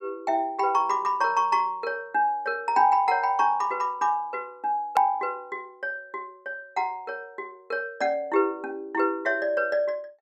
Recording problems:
edit click; at 5 s

